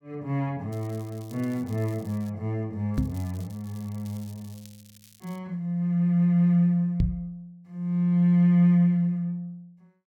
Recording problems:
crackle; from 0.5 to 2.5 s and from 3 to 5.5 s; loose cable, SNR 27 dB
microphone bump; at 3 s and at 7 s; peak +4 dB vs average level

